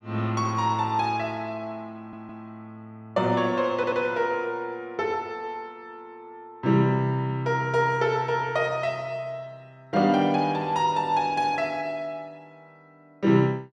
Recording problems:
stutter; at 2 s and at 4 s

